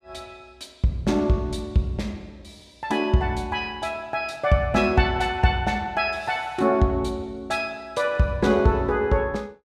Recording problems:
none

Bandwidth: 14.5 kHz